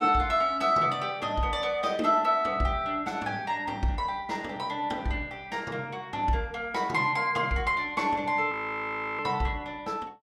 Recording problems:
frozen audio; at 8.5 s for 0.5 s

